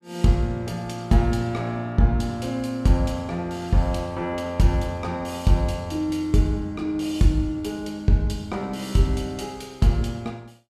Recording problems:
none

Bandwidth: 14 kHz